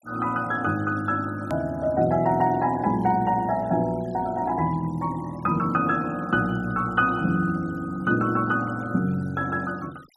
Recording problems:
denoising artefacts; signal-to-artefact ratio 26 dB
edit click; at 1.5 s

